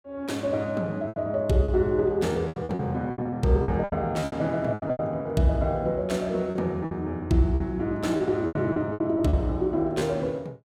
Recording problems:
lost packets; 12% of the sound replaced, filled with repeated pitch periods

